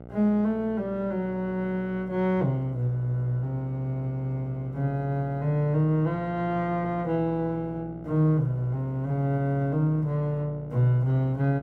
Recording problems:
hum; 60 Hz, harmonics up to 1.3 kHz, SNR 17 dB

